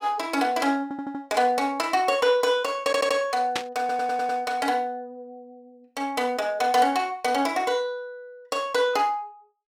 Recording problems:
stutter; at 1 s, at 3 s and at 4 s
burst of static; at 3.5 s; peak +1 dB vs average level

